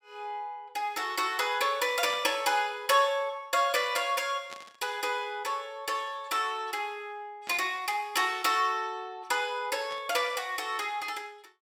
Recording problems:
static burst; 4 times, first at 2 s; peak -10 dB vs average level

